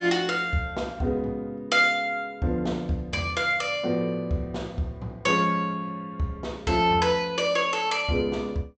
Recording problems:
treble cut off; nothing above 8 kHz

